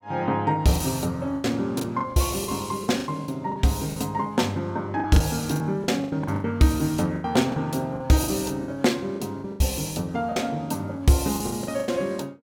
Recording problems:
packet loss; 12% of the sound replaced, filled with the last packet

